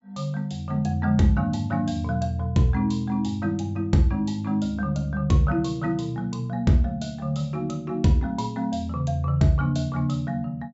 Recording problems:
treble cut off; nothing above 8 kHz

